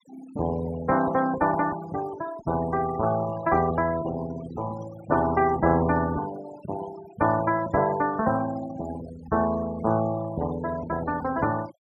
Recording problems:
noise reduction artefacts; signal-to-artefact ratio 14 dB

